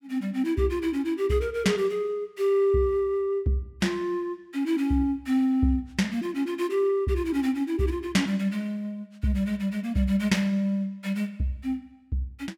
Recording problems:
none

